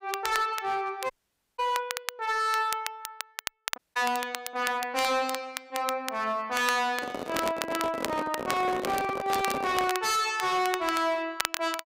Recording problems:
distorted audio; hard clipping, signal-to-distortion ratio 8 dB
crackling; vinyl, SNR 9 dB
audio cutting out; at 1 s and at 4 s
microphone handling noise; from 7 to 10 s; peak -1 dB vs average level

